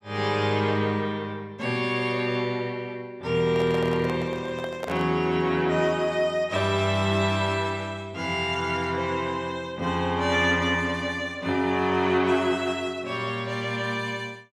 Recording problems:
microphone handling noise; from 3.5 to 5 s; peak -4 dB vs average level

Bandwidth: 14.5 kHz